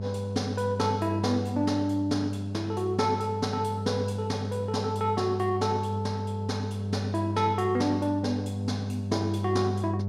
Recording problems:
hum; 50 Hz, harmonics up to 700 Hz, SNR 4 dB

